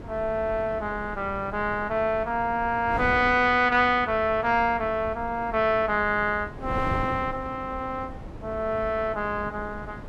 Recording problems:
wind noise; below 410 Hz, SNR 13 dB

